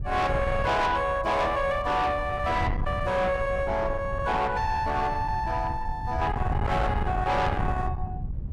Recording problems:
distorted audio; soft clipping, signal-to-distortion ratio 8 dB
wind noise; below 220 Hz, SNR 6 dB

